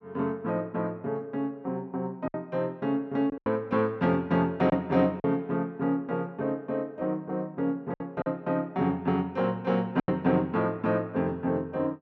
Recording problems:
packet loss; 3% of the sound replaced, filled with silence

